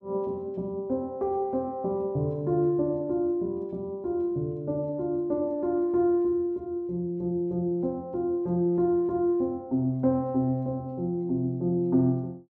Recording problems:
none

